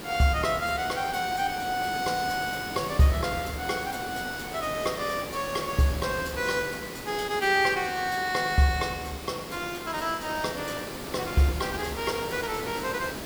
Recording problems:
background hiss; slope -5 dB per octave, SNR 9 dB

